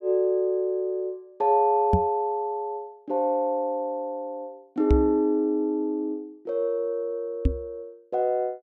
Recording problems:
knock on the microphone; at 2 s, at 5 s and at 7.5 s; peak +7 dB vs average level

